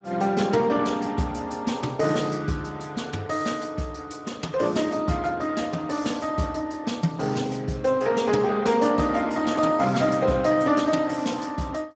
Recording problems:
codec artefacts; Speex, log-spectral distance 4 dB, nothing above 7.6 kHz

